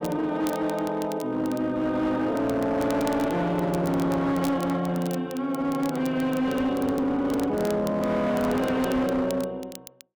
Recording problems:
distorted audio; hard clipping, signal-to-distortion ratio 11 dB
crackle; vinyl, SNR 19 dB

